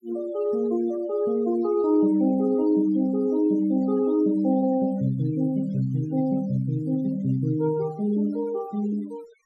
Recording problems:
noise reduction artefacts; signal-to-artefact ratio 21 dB

